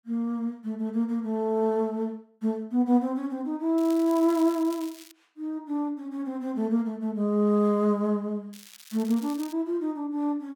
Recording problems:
crackle; from 4 to 5 s and from 8.5 to 9.5 s; loose cable, SNR 19 dB

